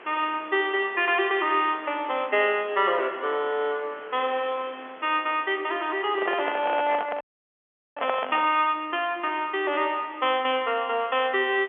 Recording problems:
telephone audio; 260 Hz to 3.3 kHz, G.711
background hiss; SNR 21 dB
microphone handling noise; from 6 to 8.5 s; peak +1 dB vs average level
audio freezing; at 7 s for 1 s

